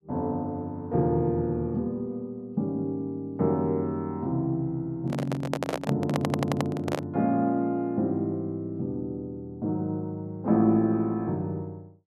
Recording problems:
handling noise; from 5 to 7 s; peak +3 dB vs average level
audio stuttering; at 6 s

